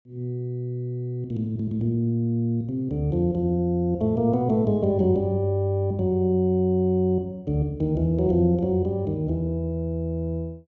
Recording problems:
none

